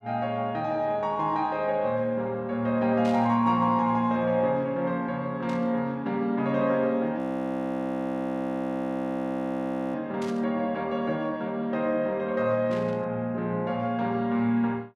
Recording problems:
static burst; 4 times, first at 3 s; peak -12 dB vs average level
frozen audio; at 7 s for 2.5 s

